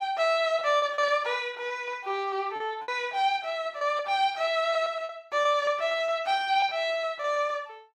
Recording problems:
packet loss; 10% of the sound replaced, filled with repeated pitch periods

